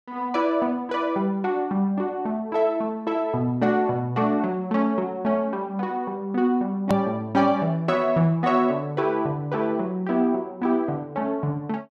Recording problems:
hard cut with a click; at 7 s

